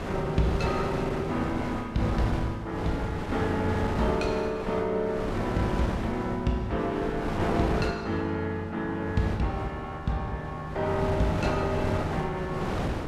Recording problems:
wind on the microphone; below 770 Hz, SNR 4 dB

